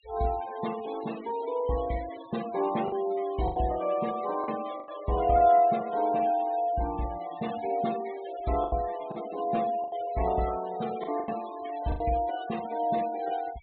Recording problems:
treble missing; nothing above 4 kHz
noise reduction artefacts; signal-to-artefact ratio 17 dB
packet loss; 5% of the sound replaced, filled with the last packet

